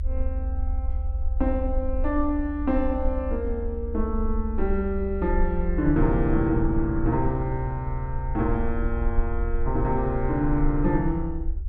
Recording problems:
low-frequency rumble; below 70 Hz, SNR 4 dB

